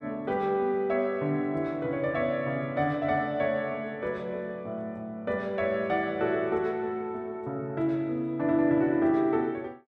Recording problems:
none

